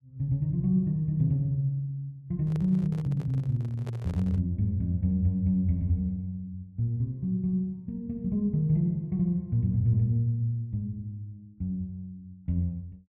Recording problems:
handling noise; from 2.5 to 4.5 s; peak -10 dB vs average level

